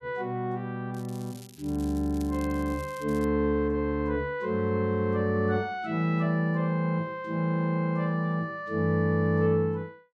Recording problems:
crackling; from 1 to 3.5 s; loose cable, SNR 23 dB

